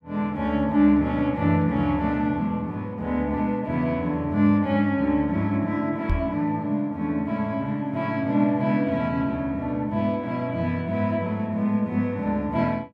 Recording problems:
microphone bump; at 6 s; peak +2 dB vs average level

